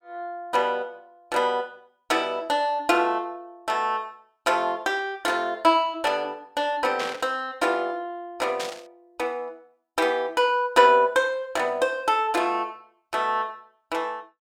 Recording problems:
burst of static; at 7 s and at 8.5 s; peak -3 dB vs average level

